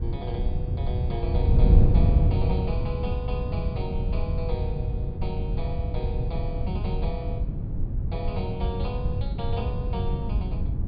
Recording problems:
treble missing; nothing above 5 kHz
wind noise; below 110 Hz, SNR -8 dB

